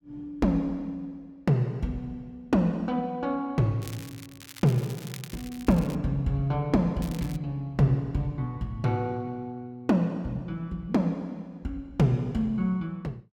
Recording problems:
crackling; from 4 to 6 s and at 7 s; loose cable, SNR 17 dB

